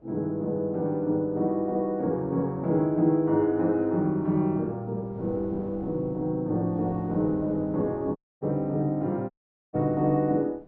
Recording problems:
wind noise; below 550 Hz, SNR 22 dB
dropout; at 8 s and at 9.5 s

